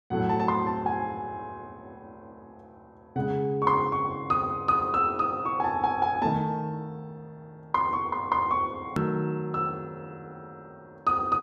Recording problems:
hard cut with a click; at 9 s

